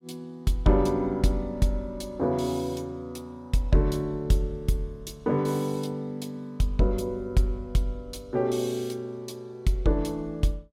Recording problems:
none

